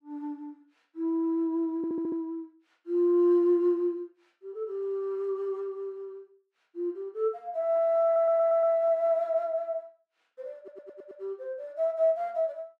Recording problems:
stutter; at 2 s, at 8 s and at 11 s

